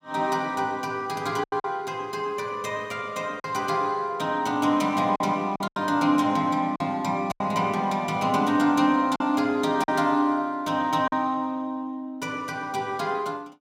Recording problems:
packet loss; 4% of the sound replaced, filled with silence

